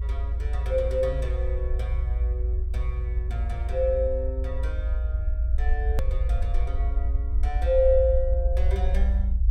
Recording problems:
rumble; below 58 Hz, strongest tone 56 Hz, SNR -2 dB
click at an edit; at 6 s

